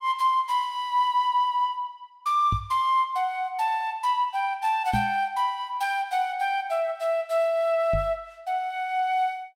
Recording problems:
microphone thump; at 2.5 s, at 5 s and at 8 s; peak +1 dB vs average level

